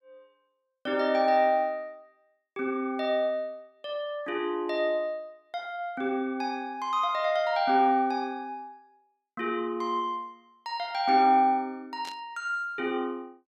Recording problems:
static burst; at 12 s; peak -9 dB vs average level

